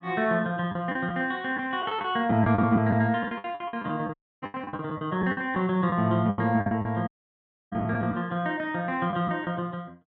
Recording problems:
lost packets; 12% of the sound replaced, filled with the last packet
dropout; at 4 s and at 7 s for 0.5 s

